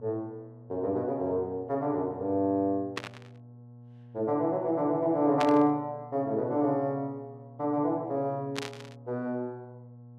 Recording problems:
hum; 60 Hz, harmonics up to 840 Hz, SNR 20 dB
burst of static; at 3 s, at 5.5 s and at 8.5 s; peak 0 dB vs average level

